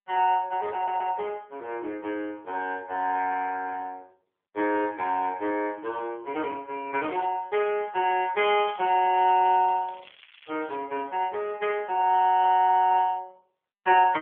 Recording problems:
telephone audio; 280 Hz to 3.3 kHz, AMR-NB
stutter; at 1 s
crackle; from 8.5 to 11 s; loose cable, SNR 24 dB

